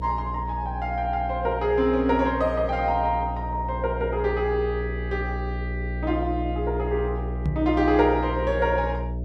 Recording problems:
hum; 60 Hz, harmonics up to 660 Hz, SNR 6 dB
microphone bump; at 7.5 s; peak +2 dB vs average level

